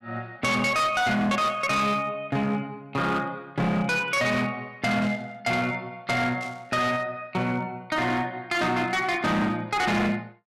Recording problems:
distortion; hard clipping, uneven, signal-to-distortion ratio 8 dB
static burst; 4 times, first at 1.5 s; peak -12 dB vs average level

